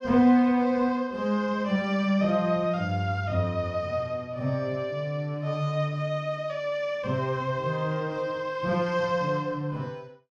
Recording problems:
none

